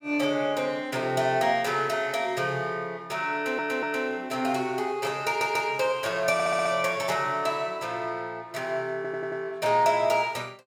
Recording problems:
audio stuttering; 4 times, first at 3.5 s

